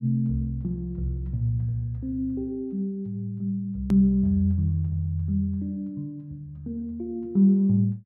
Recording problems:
click at an edit; at 4 s

